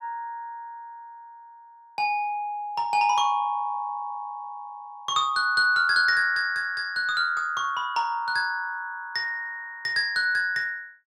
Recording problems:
none

